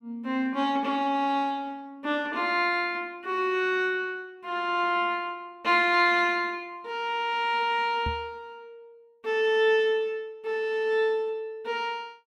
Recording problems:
knock on the microphone; at 8 s; peak -3 dB vs average level

